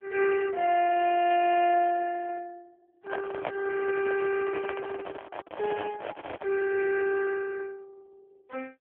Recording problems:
telephone audio; 280 Hz to 2.8 kHz, AMR-NB
handling noise; from 3 to 6.5 s; peak -3 dB vs average level

